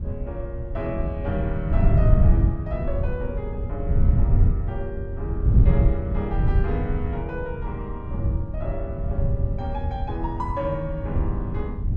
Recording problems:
wind on the microphone; below 110 Hz, SNR -7 dB

